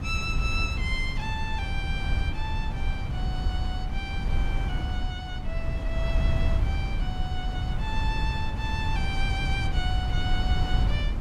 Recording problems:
wind noise; below 94 Hz, SNR -5 dB

